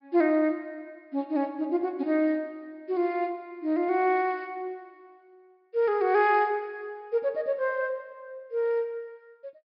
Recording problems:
treble cut off; nothing above 5.5 kHz

